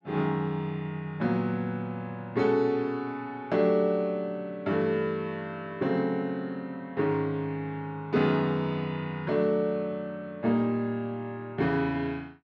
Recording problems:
none

